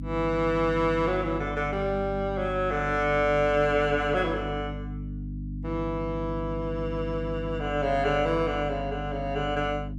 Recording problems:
hum; 50 Hz, harmonics up to 300 Hz, SNR 8 dB

